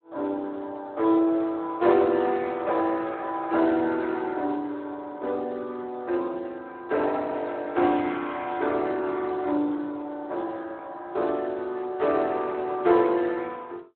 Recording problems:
phone line; 260 Hz to 4 kHz, Speex

